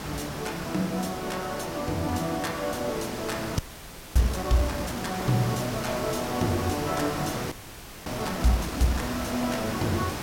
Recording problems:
hiss; slope -4 dB per octave, SNR 5 dB
frozen audio; at 3.5 s for 0.5 s and at 7.5 s for 0.5 s

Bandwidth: 16.5 kHz